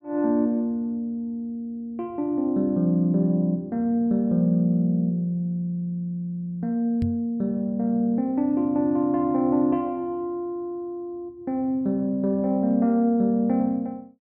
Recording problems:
microphone thump; at 7 s; peak -1 dB vs average level

